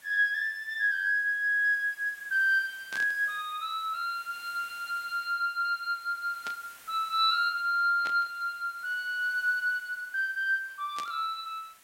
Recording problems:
hiss; SNR 24 dB
static burst; 4 times, first at 3 s; peak -7 dB vs average level

